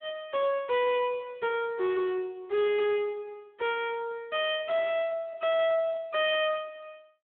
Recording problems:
phone line; 240 Hz to 3.7 kHz, Speex
distorted audio; hard clipping, uneven, signal-to-distortion ratio 9 dB

